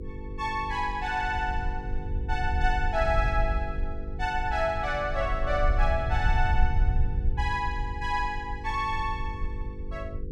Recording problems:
electrical hum; 50 Hz, harmonics up to 500 Hz, SNR 13 dB
rumble; below 70 Hz, SNR 3 dB

